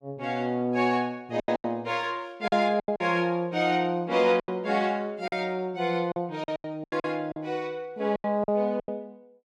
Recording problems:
packet loss; 10% of the sound replaced, filled with silence

